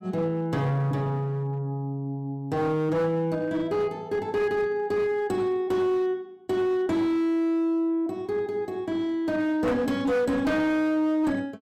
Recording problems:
distorted audio; hard clipping, uneven, signal-to-distortion ratio 10 dB

